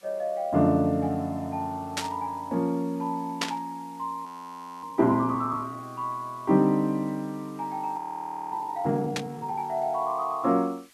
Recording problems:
hiss; SNR 28 dB
burst of static; at 2 s, at 3.5 s and at 9 s; peak +5 dB vs average level
audio freezing; at 4.5 s for 0.5 s and at 8 s for 0.5 s

